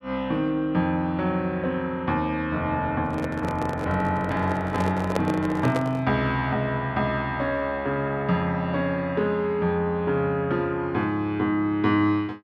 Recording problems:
handling noise; from 3 to 6 s; peak +3 dB vs average level

